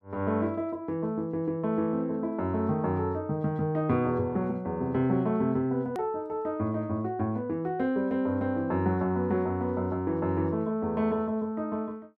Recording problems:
edit click; at 6 s

